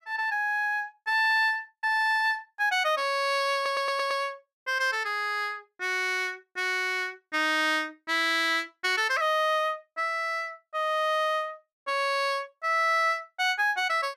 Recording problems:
audio stuttering; at 3.5 s

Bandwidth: 15 kHz